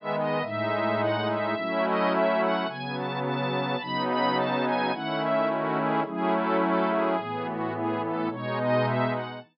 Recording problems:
low-pass filter; nothing above 5.5 kHz

